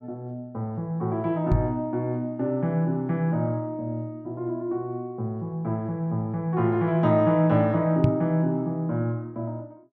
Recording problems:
microphone thump; at 1.5 s and at 8 s; peak +8 dB vs average level

